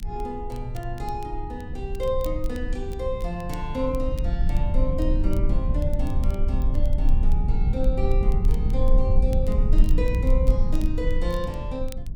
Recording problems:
low-frequency rumble; below 54 Hz, SNR -5 dB
crackle; vinyl, SNR 21 dB

